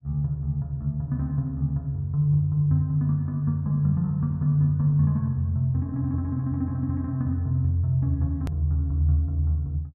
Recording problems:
click at an edit; at 8.5 s

